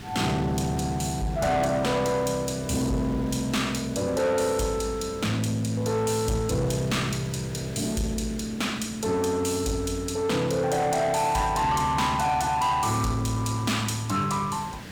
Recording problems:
distortion; soft clipping, signal-to-distortion ratio 10 dB
background hiss; SNR 17 dB

